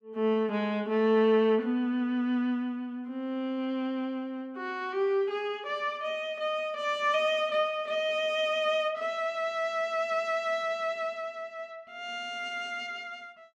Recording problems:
none

